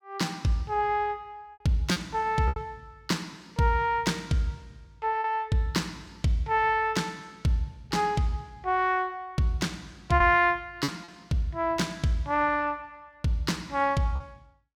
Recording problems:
lost packets; 3% of the sound replaced, filled with repeated pitch periods

